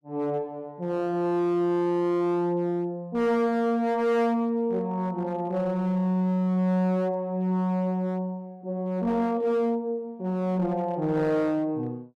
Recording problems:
distorted audio; hard clipping, uneven, signal-to-distortion ratio 10 dB

